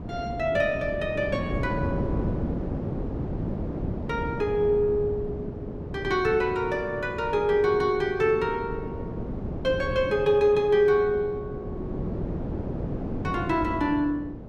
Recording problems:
wind noise; below 350 Hz, SNR 8 dB

